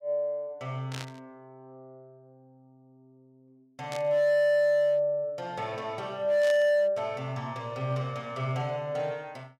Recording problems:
distortion; hard clipping, signal-to-distortion ratio 11 dB
static burst; at 1 s, at 4 s and at 6.5 s; peak -7 dB vs average level

